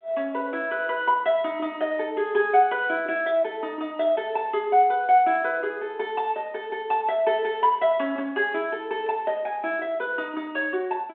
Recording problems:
phone line; 240 Hz to 3.7 kHz, G.726

